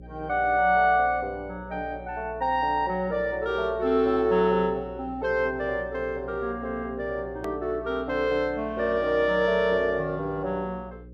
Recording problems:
hum; 60 Hz, harmonics up to 540 Hz, SNR 19 dB
edit click; at 7.5 s

